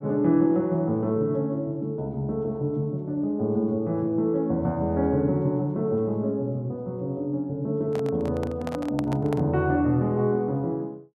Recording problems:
handling noise; from 8 to 9.5 s; peak -4 dB vs average level

